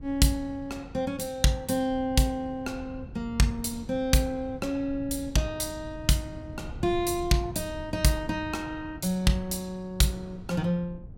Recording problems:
wind on the microphone; below 140 Hz, SNR 15 dB

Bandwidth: 16.5 kHz